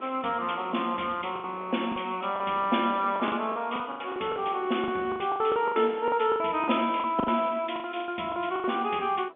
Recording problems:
telephone audio; 190 Hz to 3.6 kHz, G.711
wind on the microphone; below 880 Hz, SNR 22 dB
lost packets; 15% of the sound replaced, filled with the last packet

